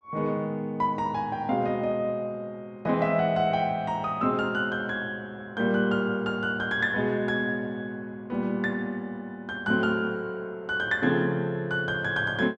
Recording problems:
none

